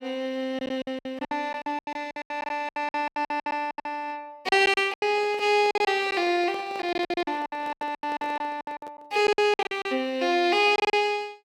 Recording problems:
lost packets; 19% of the sound replaced, filled with silence
microphone handling noise; from 5 to 9 s; peak -11 dB vs average level

